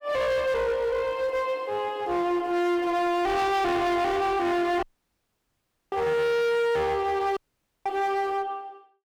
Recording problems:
distortion; hard clipping, uneven, signal-to-distortion ratio 7 dB
audio cutting out; at 5 s for 1 s and at 7.5 s

